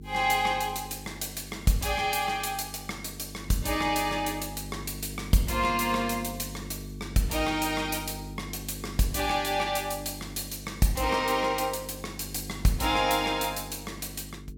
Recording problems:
hum; 50 Hz, harmonics up to 450 Hz, SNR 13 dB

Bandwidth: 17 kHz